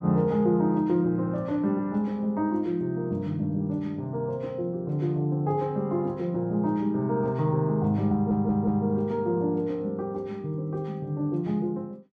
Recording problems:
audio stuttering; at 8 s

